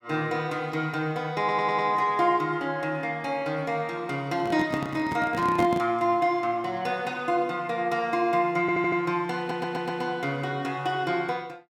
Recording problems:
stutter; at 1.5 s, at 8.5 s and at 9.5 s
handling noise; from 4.5 to 6 s; peak 0 dB vs average level

